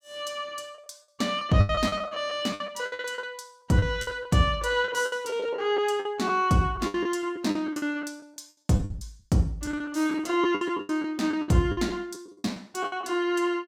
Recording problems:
packet loss; 15% of the sound replaced, filled with the last packet

